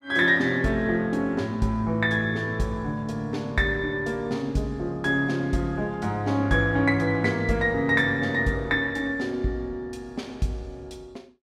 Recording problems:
none

